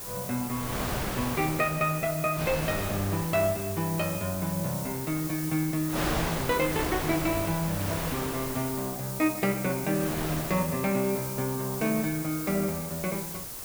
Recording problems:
background hiss; SNR 7 dB
wind on the microphone; below 1.9 kHz, SNR 7 dB

